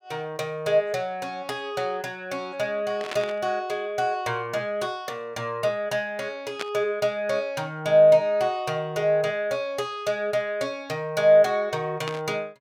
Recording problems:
burst of static; at 3 s, at 6.5 s and at 12 s; peak -2 dB vs average level

